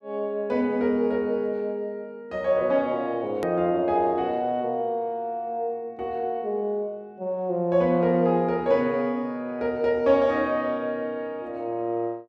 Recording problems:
hard cut with a click; at 3.5 s

